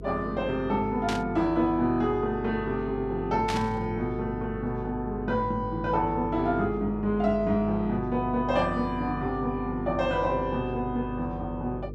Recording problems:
electrical hum; 50 Hz, harmonics up to 500 Hz, SNR 11 dB
burst of static; at 1 s and at 3.5 s; peak -1 dB vs average level

